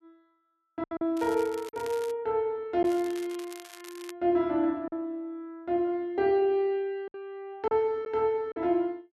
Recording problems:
lost packets; 4% of the sound replaced, filled with silence
crackle; at 1 s and from 3 to 4 s; loose cable, SNR 19 dB

